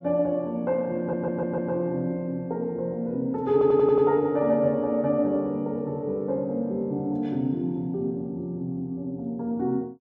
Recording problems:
audio stuttering; at 1 s and at 3.5 s

